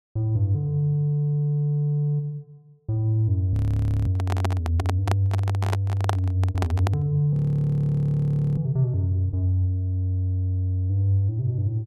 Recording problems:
frozen audio; at 3.5 s for 0.5 s and at 7.5 s for 1 s
microphone handling noise; from 4 to 7 s; peak +2 dB vs average level

